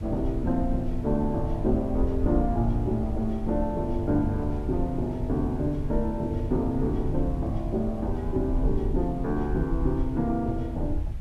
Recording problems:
background hiss; slope -5 dB per octave, SNR 25 dB
rumble; below 64 Hz, SNR 6 dB
wind noise; below 120 Hz, SNR 13 dB

